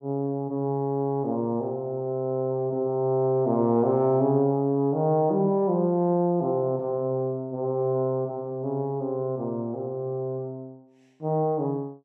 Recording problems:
none

